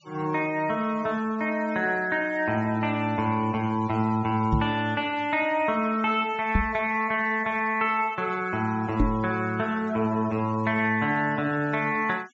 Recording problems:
treble missing; nothing above 8 kHz
noise reduction artefacts; signal-to-artefact ratio 24 dB
knock on the microphone; at 4.5 s, at 6.5 s and at 9 s; peak +5 dB vs average level

